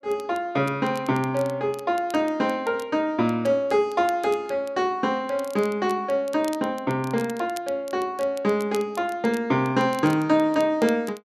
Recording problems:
crackling; vinyl, SNR 22 dB

